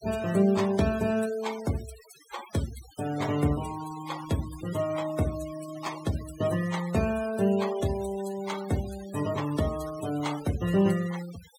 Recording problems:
noise reduction artefacts; signal-to-artefact ratio 14 dB

